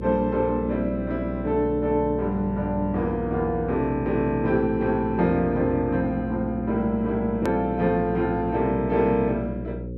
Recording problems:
hum; 60 Hz, harmonics up to 540 Hz, SNR 10 dB
edit click; at 7.5 s

